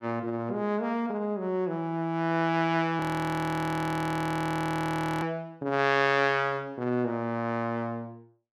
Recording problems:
frozen audio; at 3 s for 2 s

